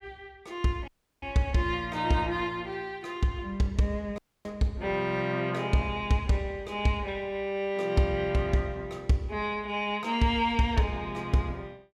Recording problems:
dropout; at 1 s and at 4 s

